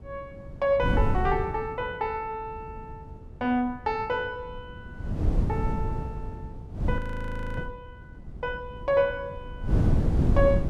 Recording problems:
wind on the microphone; below 170 Hz, SNR 0 dB
audio freezing; at 7 s for 0.5 s

